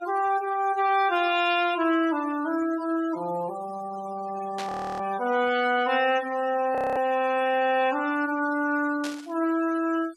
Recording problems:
noise reduction artefacts; signal-to-artefact ratio 18 dB
burst of static; at 4.5 s and at 9 s; peak -7 dB vs average level
frozen audio; at 4.5 s and at 7 s

